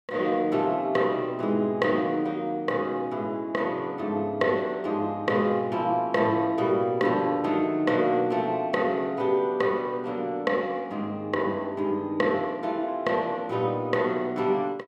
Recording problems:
none

